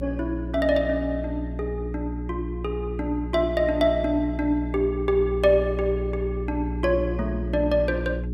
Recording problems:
hum; 60 Hz, harmonics up to 420 Hz, SNR 6 dB

